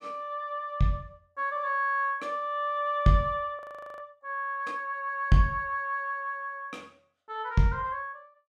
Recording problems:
frozen audio; at 3.5 s

